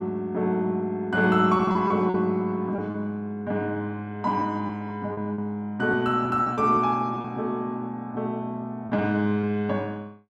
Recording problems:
packet loss; 5% of the sound replaced, filled with repeated pitch periods

